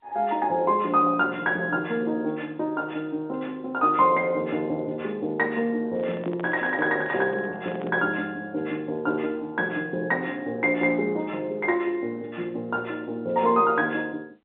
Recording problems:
phone line; 260 Hz to 3.7 kHz, G.711
handling noise; from 6 to 8 s; peak -10 dB vs average level

